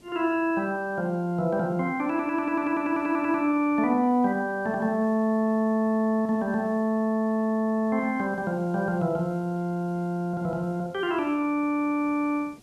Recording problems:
hiss; SNR 27 dB

